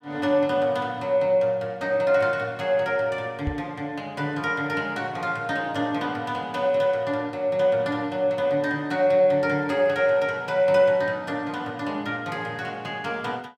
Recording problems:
microphone thump; at 3.5 s; peak -1 dB vs average level

